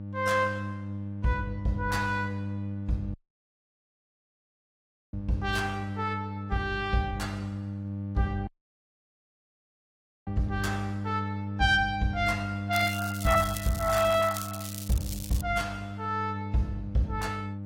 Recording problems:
codec artefacts; AAC, log-spectral distance 3 dB, nothing above 15.5 kHz
electrical hum; 50 Hz, harmonics up to 600 Hz, SNR 6 dB
dropout; at 3 s for 2 s and at 8.5 s for 2 s
crackle; from 13 to 15 s; loose cable, SNR 10 dB

